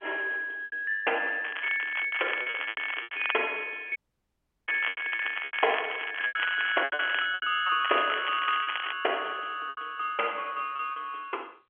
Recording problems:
telephone audio; 340 Hz to 3.3 kHz, G.711
lost packets; 10% of the sound replaced, filled with repeated pitch periods
crackle; from 1.5 to 3.5 s, from 4.5 to 7.5 s and from 8 to 9 s; loose cable, SNR 7 dB
audio cutting out; at 4 s for 0.5 s

